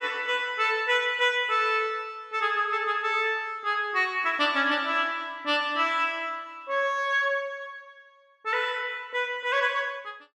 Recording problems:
none

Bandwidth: 12.5 kHz